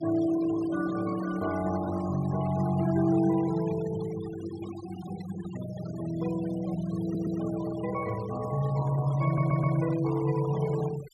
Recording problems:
denoising artefacts; signal-to-artefact ratio 16 dB
stutter; at 7 s and at 9.5 s

